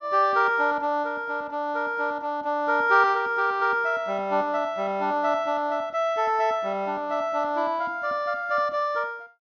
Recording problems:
treble cut off; nothing above 6.4 kHz

